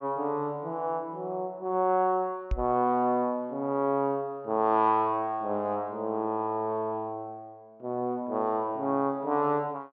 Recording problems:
treble missing; nothing above 8 kHz
knock on the microphone; at 2.5 s; peak +1 dB vs average level

